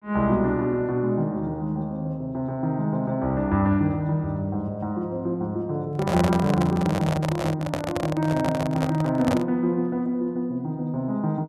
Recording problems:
microphone handling noise; from 6 to 9.5 s; peak +3 dB vs average level

